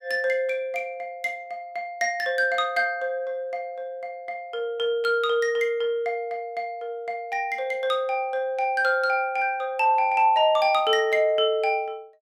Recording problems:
none

